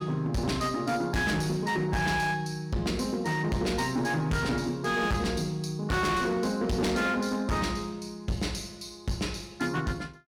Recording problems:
distortion; hard clipping, signal-to-distortion ratio 7 dB

